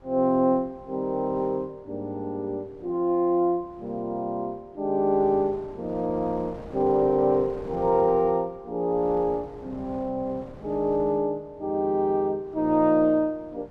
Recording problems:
wind noise; below 620 Hz, SNR 21 dB

